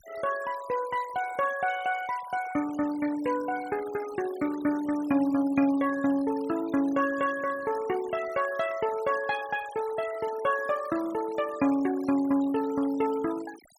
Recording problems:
denoising artefacts; signal-to-artefact ratio 18 dB

